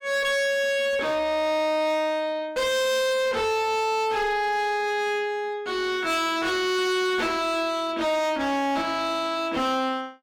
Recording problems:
distorted audio; hard clipping, uneven, signal-to-distortion ratio 7 dB

